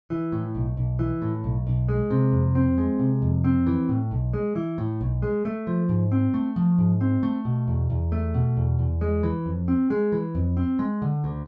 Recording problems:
none

